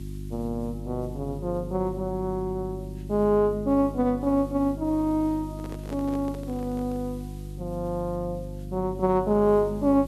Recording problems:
hum; 50 Hz, harmonics up to 350 Hz, SNR 10 dB
hiss; slope +1 dB per octave, SNR 29 dB
handling noise; from 5.5 to 7 s; peak -10 dB vs average level

